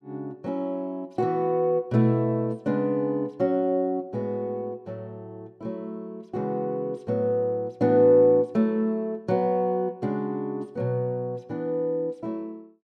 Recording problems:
none

